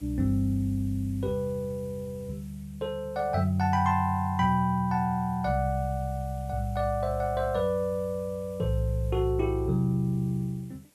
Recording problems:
hiss; SNR 28 dB

